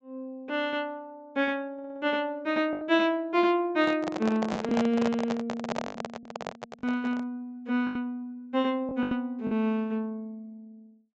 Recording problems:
treble missing; nothing above 8 kHz
packet loss; 5% of the sound replaced, filled with the last packet
stutter; at 1.5 s
microphone handling noise; from 4 to 7.5 s; peak +2 dB vs average level

